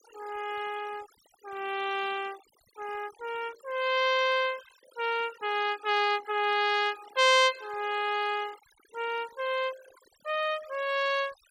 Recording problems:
noise reduction artefacts; signal-to-artefact ratio 19 dB

